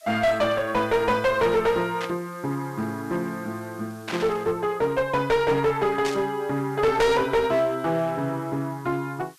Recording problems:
distortion; hard clipping, uneven, signal-to-distortion ratio 7 dB
background hiss; SNR 27 dB
burst of static; at 2 s, at 4 s and at 6 s; peak -4 dB vs average level

